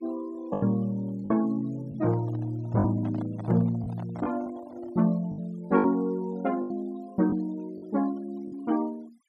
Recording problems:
noise reduction artefacts; signal-to-artefact ratio 24 dB
lost packets; 6% of the sound replaced, filled with the last packet
handling noise; from 2 to 5 s; peak -9 dB vs average level

